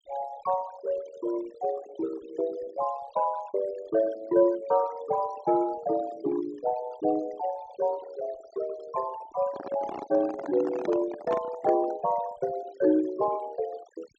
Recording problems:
low-pass filter; nothing above 8 kHz
denoising artefacts; signal-to-artefact ratio 18 dB
handling noise; from 9.5 to 12 s; peak -2 dB vs average level

